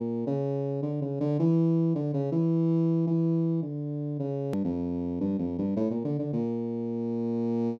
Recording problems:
click at an edit; at 4.5 s

